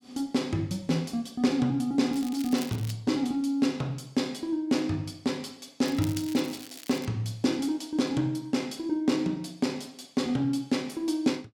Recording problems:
crackling; at 2 s and from 6 to 7 s; loose cable, SNR 16 dB

